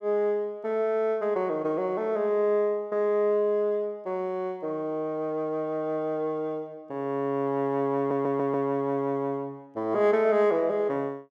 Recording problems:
audio stuttering; at 8 s

